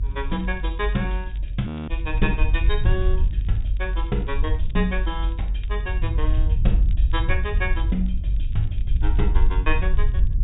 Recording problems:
low-pass filter; nothing above 4 kHz
low-frequency rumble; below 56 Hz, SNR -4 dB
crackling; vinyl, SNR 27 dB
audio freezing; at 1.5 s

